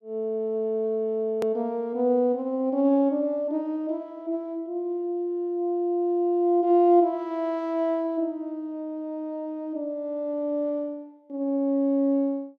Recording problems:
edit click; at 1.5 s

